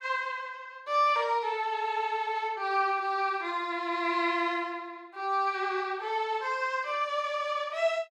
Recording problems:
none

